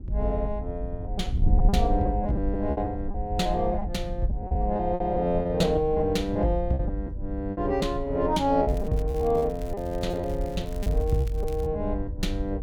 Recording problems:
wind noise; below 78 Hz, SNR 6 dB
lost packets; 9% of the sound replaced, filled with repeated pitch periods
crackling; from 8.5 to 12 s; loose cable, SNR 23 dB

